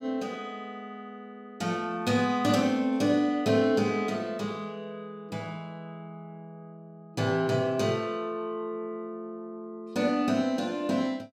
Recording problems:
none

